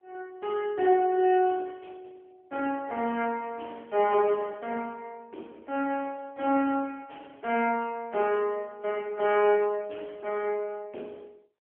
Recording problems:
telephone audio; 260 Hz to 3.2 kHz, AMR-NB

